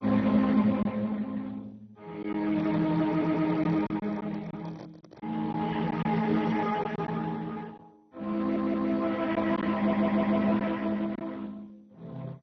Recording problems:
lossy codec; Speex, then MP2, log-spectral distance 4 dB, nothing above 6 kHz
lost packets; 3% of the sound replaced, filled with silence
microphone handling noise; from 2.5 to 5.5 s; peak -13 dB vs average level
stutter; at 3 s, at 8.5 s and at 10 s

